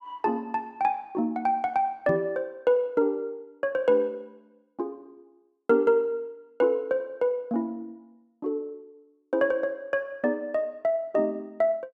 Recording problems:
knock on the microphone; at 2 s; peak 0 dB vs average level

